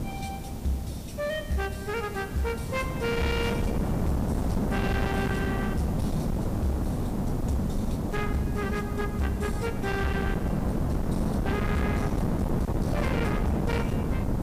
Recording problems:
distortion; hard clipping, signal-to-distortion ratio 8 dB
hiss; slope +2 dB per octave, SNR 18 dB
wind on the microphone; below 310 Hz, SNR -2 dB

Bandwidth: 15 kHz